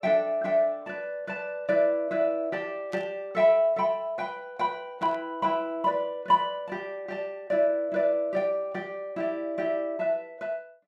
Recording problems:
burst of static; at 3 s and at 5 s; peak -13 dB vs average level

